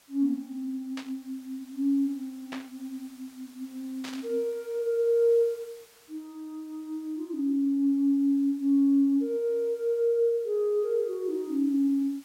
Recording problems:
background hiss; slope 0 dB per octave, SNR 29 dB
static burst; at 1 s, at 2.5 s and at 4 s; peak -8 dB vs average level

